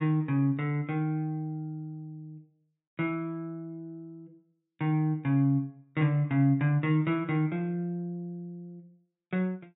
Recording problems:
low-pass filter; nothing above 4 kHz

